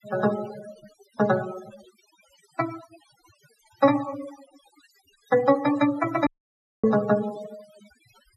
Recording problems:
denoising artefacts; signal-to-artefact ratio 16 dB
audio cutting out; at 6.5 s for 0.5 s

